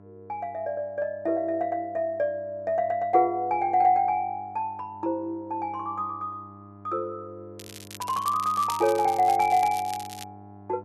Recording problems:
hum; 50 Hz, harmonics up to 1.4 kHz, SNR 23 dB
crackle; from 7.5 to 10 s; loose cable, SNR 15 dB

